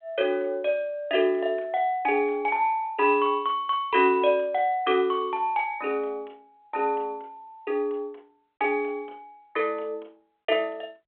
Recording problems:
telephone audio; 320 Hz to 3.5 kHz, G.726

